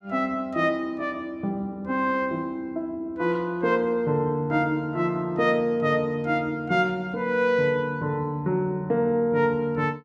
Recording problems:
none

